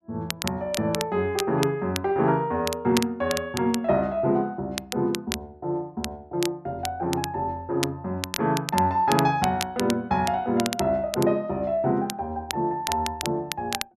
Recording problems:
crackling; vinyl, SNR 9 dB

